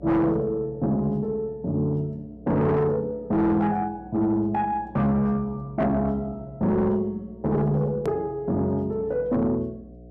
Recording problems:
distortion; soft clipping, signal-to-distortion ratio 10 dB
electrical hum; 60 Hz, harmonics up to 720 Hz, SNR 22 dB
edit click; at 8 s

